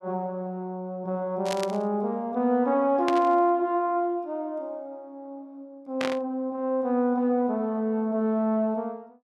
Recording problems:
burst of static; at 1.5 s, at 3 s and at 6 s; peak -1 dB vs average level

